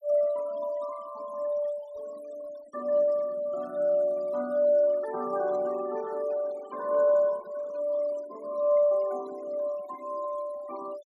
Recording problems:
noise reduction artefacts; signal-to-artefact ratio 22 dB

